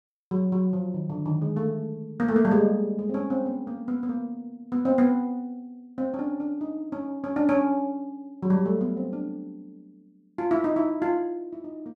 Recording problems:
none

